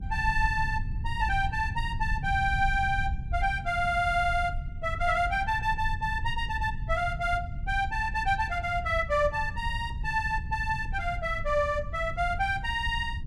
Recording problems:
rumble; below 94 Hz, SNR 7 dB

